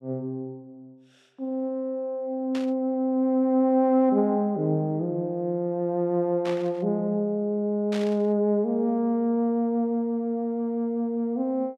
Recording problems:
static burst; at 2.5 s, at 6.5 s and at 8 s; peak -8 dB vs average level

